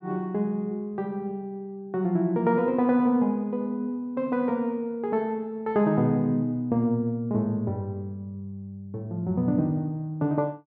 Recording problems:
none

